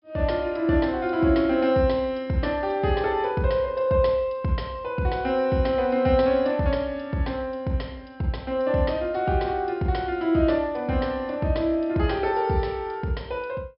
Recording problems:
low-pass filter; nothing above 5.3 kHz

